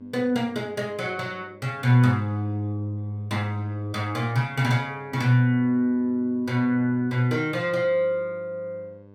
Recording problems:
hum; 50 Hz, harmonics up to 1.1 kHz, SNR 26 dB

